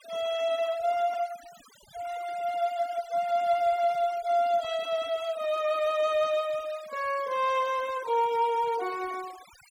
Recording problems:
noise reduction artefacts; signal-to-artefact ratio 20 dB

